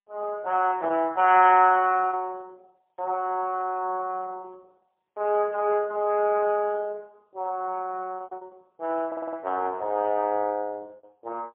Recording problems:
phone line; 280 Hz to 2.9 kHz, AMR-NB, then MP3
lost packets; 5% of the sound replaced, filled with repeated pitch periods
audio stuttering; at 9 s

